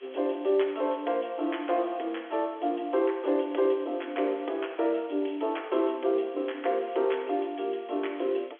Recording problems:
telephone audio; 260 Hz to 3.4 kHz, G.711
background hiss; SNR 27 dB

